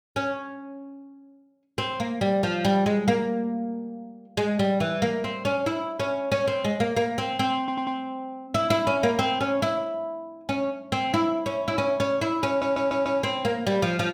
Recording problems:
stutter; at 7.5 s and at 12 s

